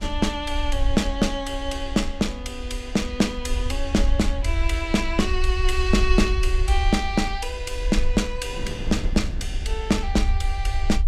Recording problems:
rumble; below 60 Hz, SNR 3 dB
wind noise; below 300 Hz, SNR 18 dB

